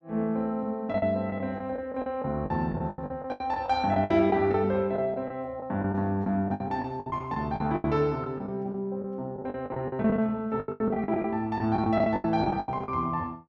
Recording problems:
lost packets; 16% of the sound replaced, filled with the last packet

